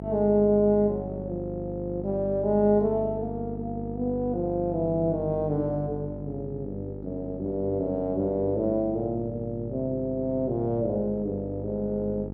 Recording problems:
electrical hum; 50 Hz, harmonics up to 850 Hz, SNR 10 dB

